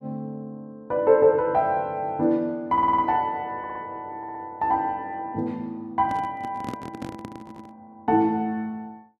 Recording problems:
stutter; 4 times, first at 2.5 s
microphone handling noise; from 6 to 7.5 s; peak -5 dB vs average level

